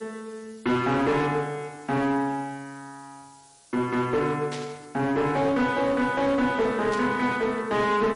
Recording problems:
lossy compression; MP3, log-spectral distance 6 dB, nothing above 10.4 kHz
distorted audio; hard clipping, uneven, signal-to-distortion ratio 11 dB
background hiss; SNR 28 dB
burst of static; at 4.5 s and at 7 s; peak -8 dB vs average level

